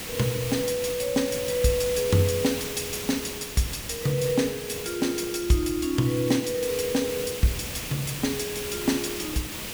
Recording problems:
background hiss; SNR 7 dB

